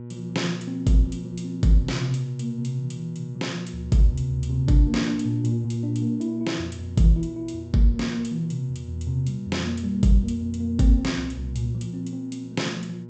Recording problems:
treble cut off; nothing above 8 kHz
hum; 60 Hz, harmonics up to 960 Hz, SNR 15 dB

